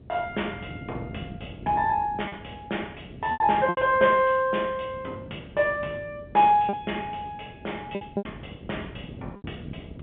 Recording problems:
phone line; 260 Hz to 3.6 kHz, G.711
wind noise; below 400 Hz, SNR 15 dB
lost packets; 5% of the sound replaced, filled with repeated pitch periods

